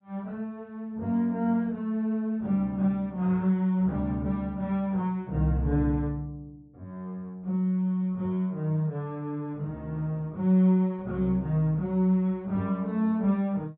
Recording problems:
treble cut off; nothing above 4 kHz

